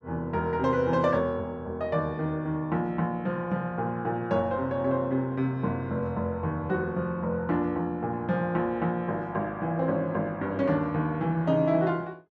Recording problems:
none

